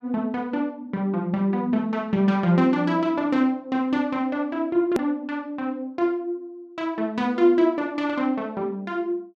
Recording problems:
hard cut with a click; at 5 s

